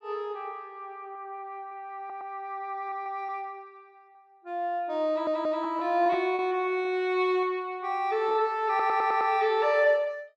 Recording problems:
lost packets; 3% of the sound replaced, filled with repeated pitch periods
audio stuttering; at 2 s, at 5 s and at 8.5 s

